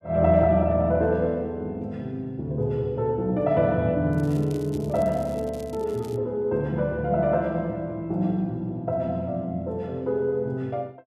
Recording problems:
crackling; from 4 to 6 s; loose cable, SNR 25 dB

